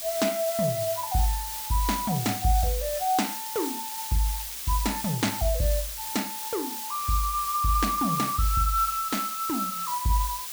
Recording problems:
background hiss; slope +3 dB per octave, SNR 5 dB
crackle; from 1.5 to 3 s and from 3 to 5 s; loose cable, SNR 19 dB

